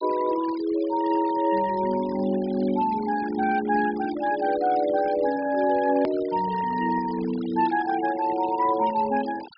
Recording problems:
treble cut off; nothing above 5.5 kHz
denoising artefacts; signal-to-artefact ratio 17 dB
hard cut with a click; at 6 s

